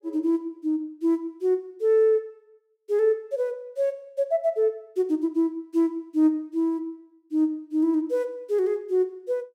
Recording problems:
none

